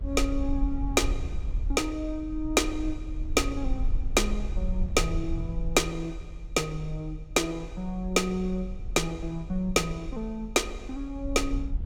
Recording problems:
rumble; below 56 Hz, SNR 6 dB

